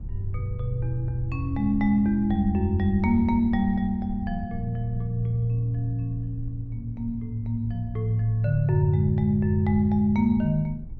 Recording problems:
low-frequency rumble; below 78 Hz, SNR 15 dB

